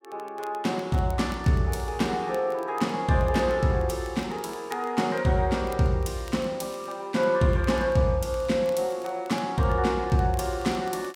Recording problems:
crackling; vinyl, SNR 27 dB

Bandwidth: 16.5 kHz